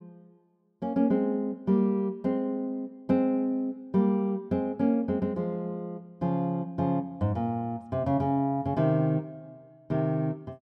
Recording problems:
none

